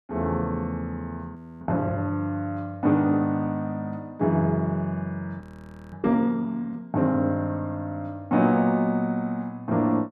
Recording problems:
frozen audio; at 1.5 s and at 5.5 s for 0.5 s

